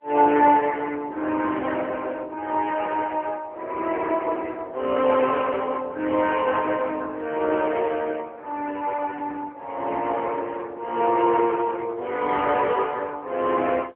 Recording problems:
phone line; 280 Hz to 3.1 kHz, AMR-NB

